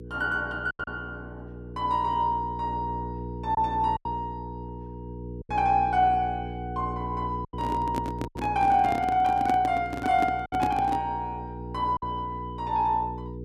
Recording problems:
electrical hum; 60 Hz, harmonics up to 480 Hz, SNR 11 dB
packet loss; 4% of the sound replaced, filled with silence
handling noise; from 7.5 to 11 s; peak +1 dB vs average level

